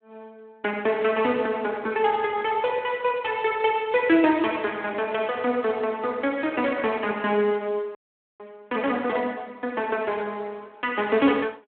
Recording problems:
phone line; 260 Hz to 3.4 kHz, Speex
audio freezing; at 8 s

